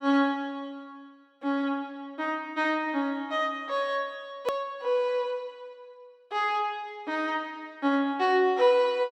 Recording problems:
edit click; at 4.5 s

